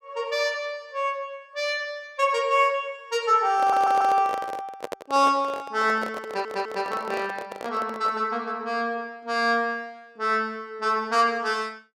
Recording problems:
microphone handling noise; from 3.5 to 8.5 s; peak -3 dB vs average level
stutter; at 3.5 s and at 6.5 s

